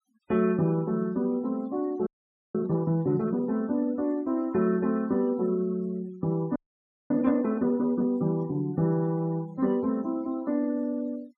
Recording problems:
denoising artefacts; signal-to-artefact ratio 26 dB
frozen audio; at 2 s and at 6.5 s for 0.5 s

